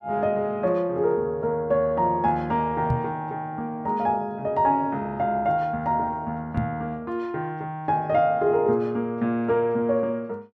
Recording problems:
microphone thump; at 3 s and at 6.5 s; peak +2 dB vs average level

